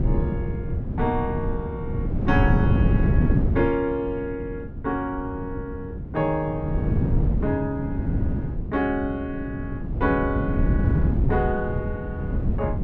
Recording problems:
hum; 60 Hz, harmonics up to 360 Hz, SNR 20 dB
wind on the microphone; below 180 Hz, SNR -2 dB

